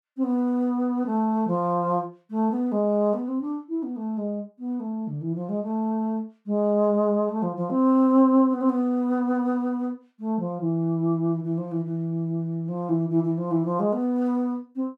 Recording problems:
none

